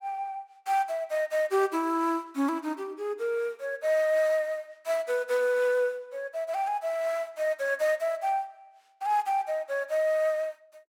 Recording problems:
none

